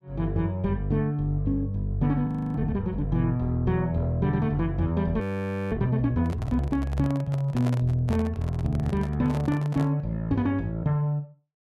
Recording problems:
audio freezing; at 2.5 s and at 5 s for 0.5 s
microphone handling noise; from 6 to 10 s; peak -5 dB vs average level

